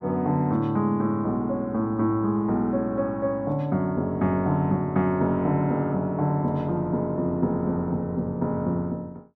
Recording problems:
none

